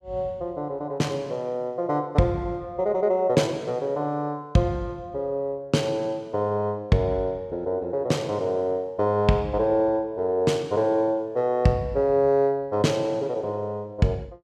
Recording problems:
none

